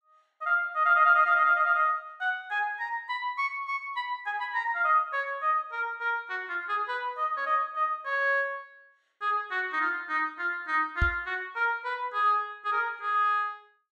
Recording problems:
knock on the microphone; at 11 s; peak +3 dB vs average level

